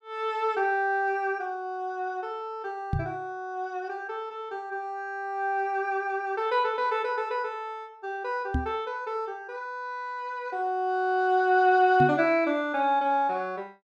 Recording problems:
knock on the microphone; at 3 s, at 8.5 s and at 12 s; peak +4 dB vs average level

